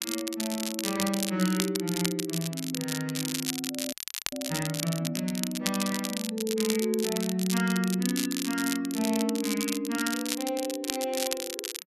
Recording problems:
crackling; vinyl, SNR 3 dB
frozen audio; at 4 s

